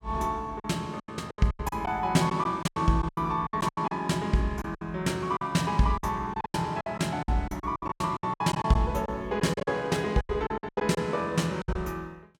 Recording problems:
packet loss; 16% of the sound replaced, filled with silence

